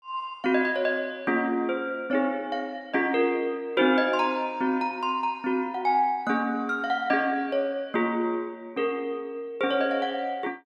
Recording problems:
none

